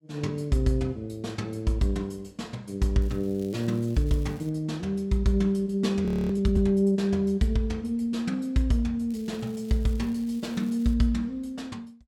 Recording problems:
crackling; from 3 to 4.5 s and from 9 to 11 s; loose cable, SNR 27 dB
audio freezing; at 6 s

